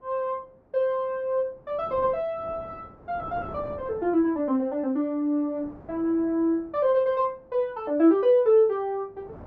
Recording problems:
wind on the microphone; below 630 Hz, SNR 21 dB

